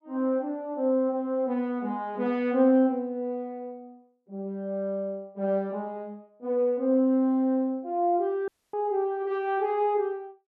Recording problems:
dropout; at 8.5 s

